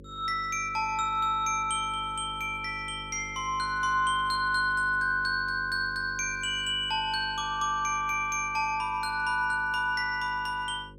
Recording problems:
electrical hum; 50 Hz, harmonics up to 550 Hz, SNR 19 dB

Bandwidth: 16 kHz